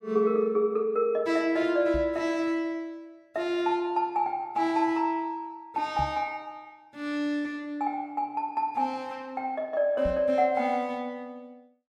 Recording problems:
knock on the microphone; at 2 s, at 6 s and at 10 s; peak -4 dB vs average level

